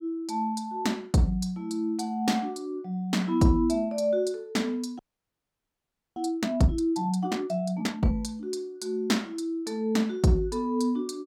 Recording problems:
frozen audio; at 5 s for 1 s

